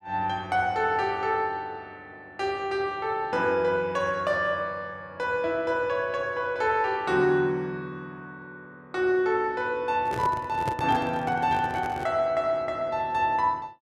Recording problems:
microphone handling noise; from 10 to 12 s; peak -1 dB vs average level

